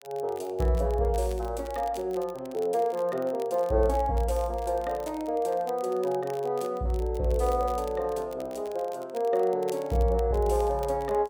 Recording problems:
crackle; vinyl, SNR 23 dB

